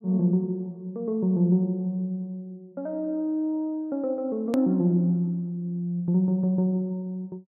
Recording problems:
click at an edit; at 4.5 s

